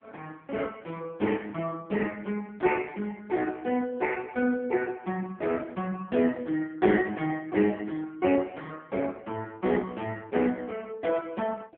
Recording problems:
phone line; 220 Hz to 3.1 kHz, AMR-NB

